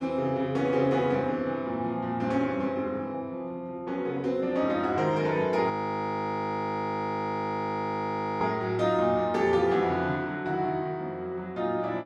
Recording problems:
frozen audio; at 5.5 s for 2.5 s

